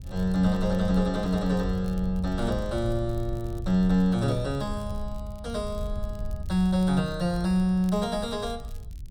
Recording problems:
wind on the microphone; below 80 Hz, SNR 11 dB
crackle; vinyl, SNR 30 dB

